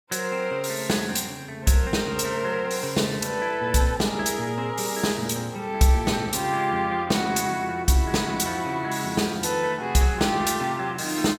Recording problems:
none

